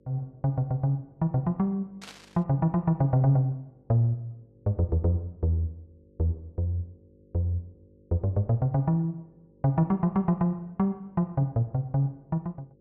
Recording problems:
hum; 50 Hz, harmonics up to 550 Hz, SNR 32 dB
static burst; at 2 s; peak -11 dB vs average level

